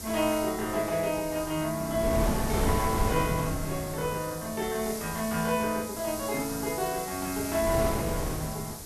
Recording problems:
background hiss; SNR 9 dB
wind noise; below 430 Hz, SNR 3 dB

